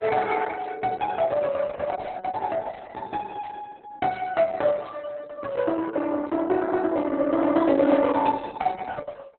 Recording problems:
codec artefacts; Opus, log-spectral distance 4 dB, nothing above 4 kHz

